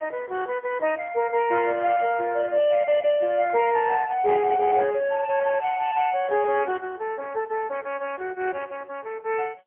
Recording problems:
telephone audio; 300 Hz to 3.3 kHz, AMR-NB, then MP3

